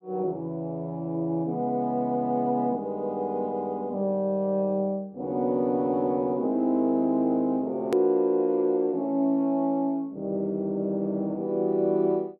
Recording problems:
edit click; at 8 s

